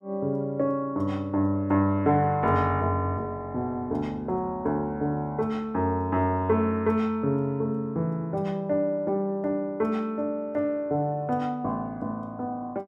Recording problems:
none

